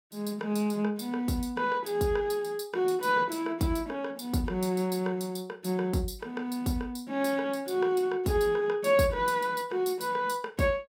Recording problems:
none

